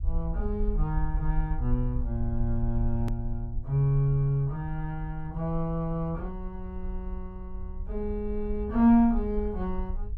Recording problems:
low-frequency rumble; below 54 Hz, SNR 7 dB
edit click; at 3 s

